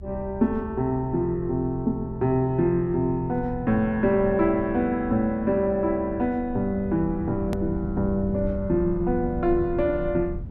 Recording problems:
rumble; below 110 Hz, SNR 13 dB
hard cut with a click; at 7.5 s

